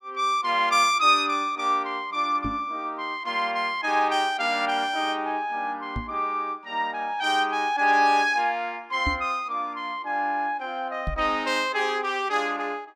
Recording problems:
knock on the microphone; 4 times, first at 2.5 s; peak -1 dB vs average level

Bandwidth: 17 kHz